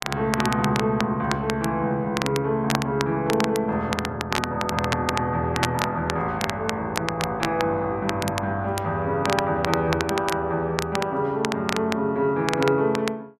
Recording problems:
crackling; vinyl, SNR 7 dB

